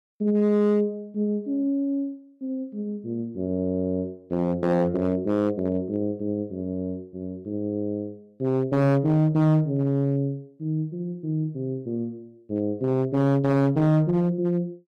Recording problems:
distortion; hard clipping, uneven, signal-to-distortion ratio 11 dB

